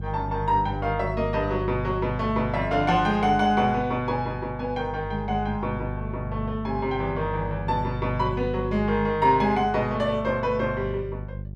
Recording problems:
hum; 50 Hz, harmonics up to 400 Hz, SNR 9 dB

